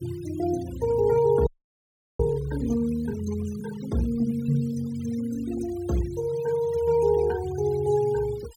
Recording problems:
noise reduction artefacts; signal-to-artefact ratio 20 dB
frozen audio; at 1.5 s for 0.5 s

